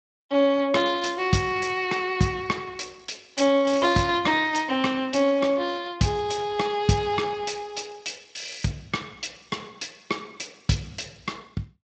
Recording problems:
lossy compression; Speex, log-spectral distance 8 dB, nothing above 7.8 kHz

